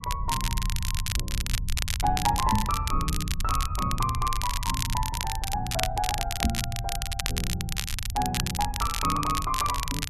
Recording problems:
low-frequency rumble; below 88 Hz, SNR 4 dB
crackle; vinyl, SNR 2 dB
microphone bump; at 2.5 s and at 6.5 s; peak +7 dB vs average level

